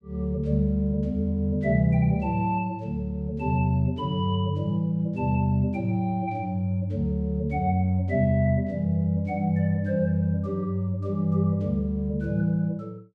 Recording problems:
none

